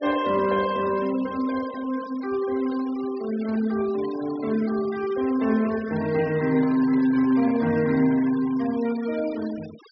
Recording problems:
treble cut off; nothing above 5.5 kHz
noise reduction artefacts; signal-to-artefact ratio 19 dB
microphone handling noise; from 6.5 to 8 s; peak -13 dB vs average level

